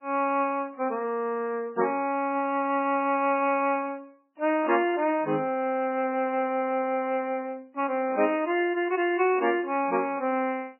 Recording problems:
lossy codec; MP3, log-spectral distance 3 dB, nothing above 2.6 kHz

